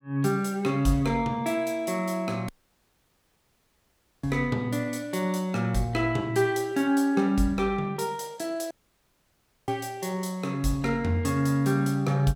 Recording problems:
dropout; at 2.5 s for 1.5 s and at 8.5 s for 1 s

